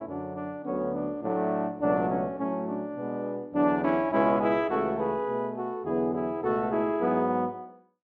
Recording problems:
none

